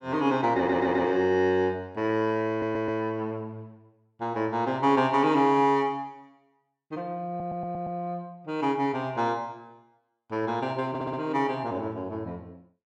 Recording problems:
audio stuttering; 4 times, first at 0.5 s

